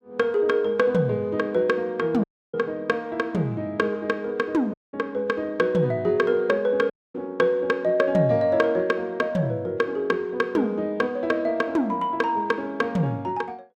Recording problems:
dropout; at 2 s, at 4.5 s and at 7 s

